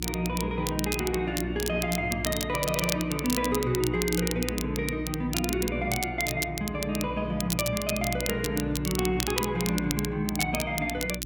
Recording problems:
hum; 60 Hz, harmonics up to 360 Hz, SNR 8 dB
crackle; vinyl, SNR 5 dB

